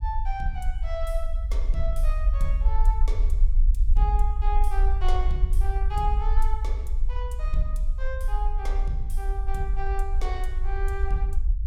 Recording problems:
low-frequency rumble; below 48 Hz, SNR -8 dB

